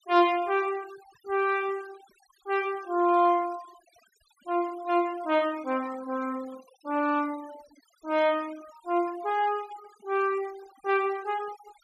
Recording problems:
noise reduction artefacts; signal-to-artefact ratio 22 dB

